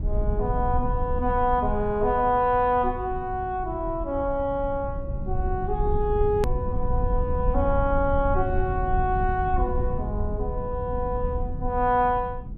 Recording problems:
rumble; below 86 Hz, SNR 5 dB
click at an edit; at 6.5 s

